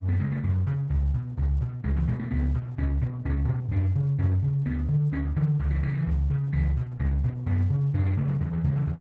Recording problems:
lossy codec; Opus, log-spectral distance 2 dB

